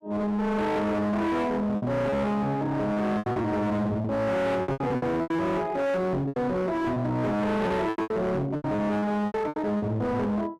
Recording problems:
distortion; hard clipping, signal-to-distortion ratio 7 dB
packet loss; 11% of the sound replaced, filled with repeated pitch periods

